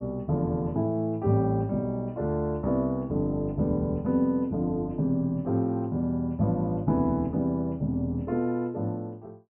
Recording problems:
low-pass filter; nothing above 3.1 kHz

